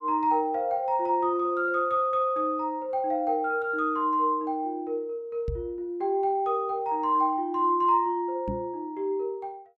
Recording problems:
knock on the microphone; at 5.5 s and at 8.5 s; peak -2 dB vs average level

